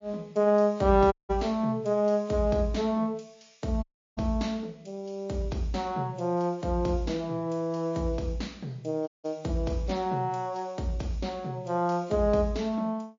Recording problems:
codec artefacts; MP3, log-spectral distance 2 dB
dropout; at 1 s, at 4 s and at 9 s

